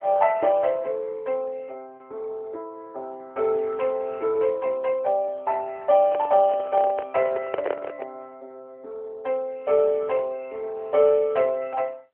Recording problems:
telephone audio; 340 Hz to 3.1 kHz, AMR-NB
lost packets; 0.5% of the sound replaced, filled with repeated pitch periods
microphone handling noise; from 6 to 8 s; peak 0 dB vs average level

